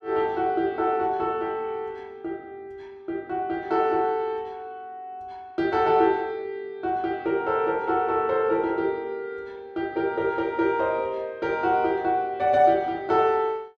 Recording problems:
none

